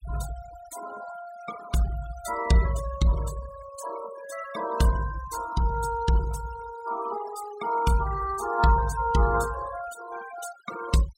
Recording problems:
denoising artefacts; signal-to-artefact ratio 13 dB

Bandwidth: 16 kHz